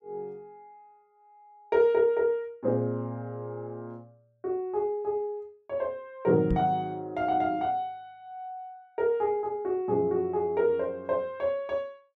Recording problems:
knock on the microphone; at 6.5 s; peak +3 dB vs average level

